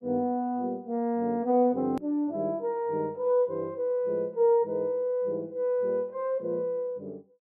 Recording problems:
edit click; at 2 s

